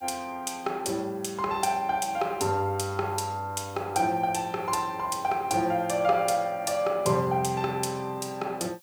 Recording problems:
background hiss; slope +5 dB per octave, SNR 28 dB

